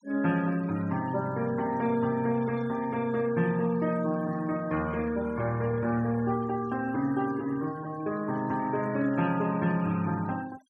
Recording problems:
denoising artefacts; signal-to-artefact ratio 20 dB

